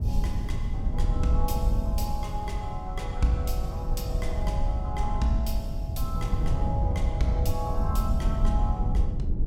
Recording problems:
rumble; below 84 Hz, SNR -4 dB

